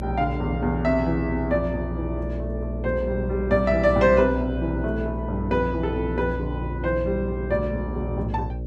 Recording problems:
electrical hum; 60 Hz, harmonics up to 600 Hz, SNR 6 dB

